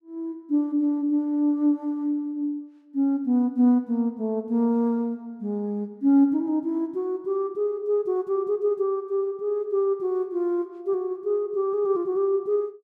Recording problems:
none

